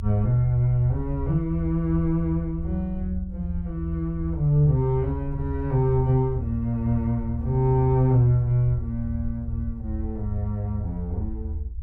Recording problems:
low-frequency rumble; below 78 Hz, SNR 8 dB

